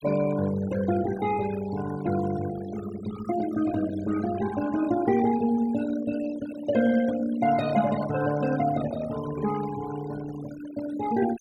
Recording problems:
noise reduction artefacts; signal-to-artefact ratio 14 dB

